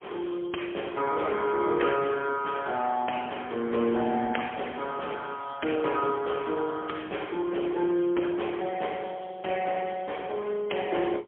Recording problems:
telephone audio; 280 Hz to 3.2 kHz, AMR-NB, then MP3

